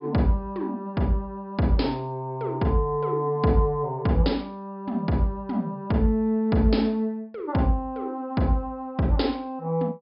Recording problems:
low-pass filter; nothing above 5.5 kHz

